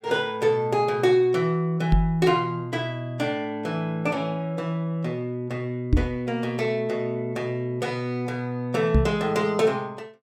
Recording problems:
knock on the microphone; at 2 s, at 6 s and at 9 s; peak +8 dB vs average level

